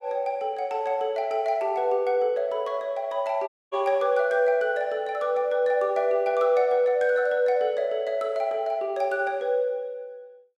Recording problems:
dropout; at 3.5 s

